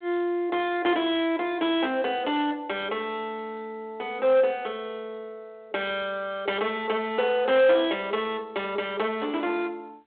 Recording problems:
phone line; 300 Hz to 3.6 kHz, G.726
distorted audio; soft clipping, signal-to-distortion ratio 12 dB

